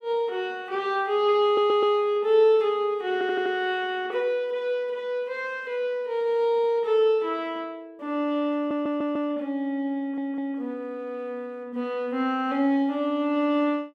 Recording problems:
stutter; 4 times, first at 1.5 s

